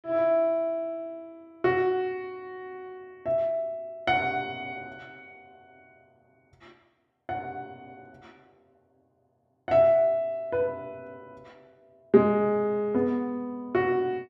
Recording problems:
none

